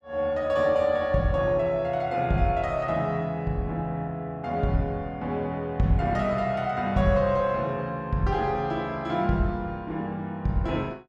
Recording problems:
none

